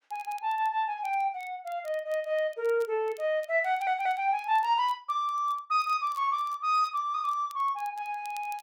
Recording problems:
crackling; vinyl, SNR 28 dB
stutter; at 3.5 s

